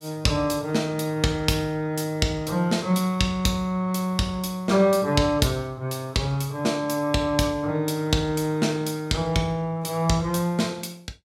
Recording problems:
none

